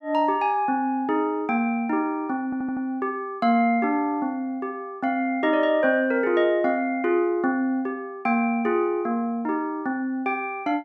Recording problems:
stutter; at 2.5 s

